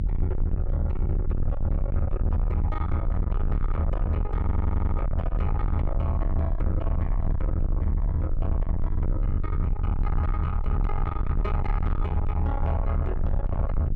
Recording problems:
distorted audio; soft clipping, signal-to-distortion ratio 6 dB
rumble; below 80 Hz, SNR -8 dB
stutter; at 4.5 s

